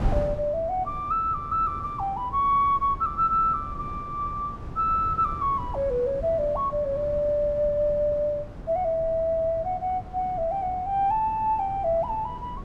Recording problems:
wind noise; below 230 Hz, SNR 13 dB

